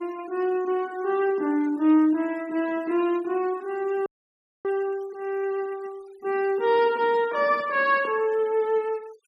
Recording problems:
denoising artefacts; signal-to-artefact ratio 25 dB
audio freezing; at 4 s for 0.5 s

